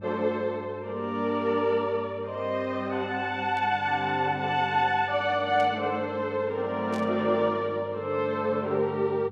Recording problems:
hum; 50 Hz, harmonics up to 500 Hz, SNR 18 dB
burst of static; at 3.5 s, at 5.5 s and at 7 s; peak -14 dB vs average level

